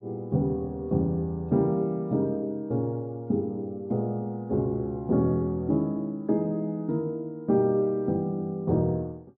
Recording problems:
none

